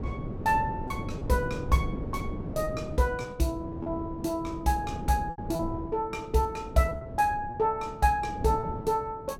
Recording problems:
wind noise; below 310 Hz, SNR 8 dB
packet loss; 6% of the sound replaced, filled with repeated pitch periods

